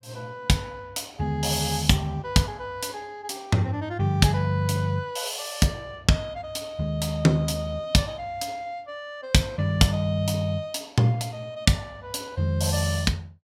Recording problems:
none

